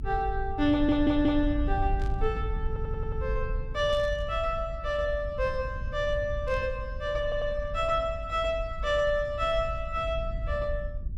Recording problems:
low-frequency rumble; below 74 Hz, SNR 6 dB
stutter; at 0.5 s, at 2.5 s and at 7 s
burst of static; at 2 s, at 4 s and at 6.5 s; peak -14 dB vs average level

